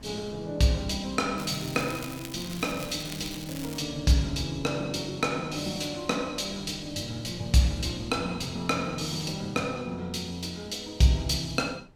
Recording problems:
wind noise; below 390 Hz, SNR 21 dB
crackle; from 1.5 to 4 s; loose cable, SNR 12 dB

